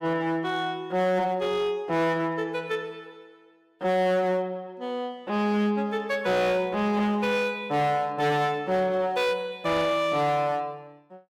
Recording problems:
distortion; hard clipping, uneven, signal-to-distortion ratio 11 dB

